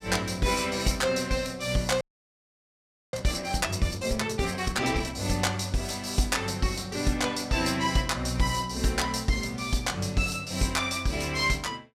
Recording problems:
frozen audio; at 2 s for 1 s

